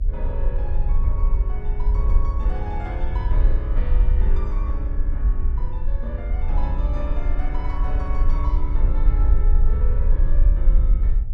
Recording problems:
hum; 60 Hz, harmonics up to 720 Hz, SNR 18 dB
rumble; below 50 Hz, strongest tone 22 Hz, SNR -12 dB

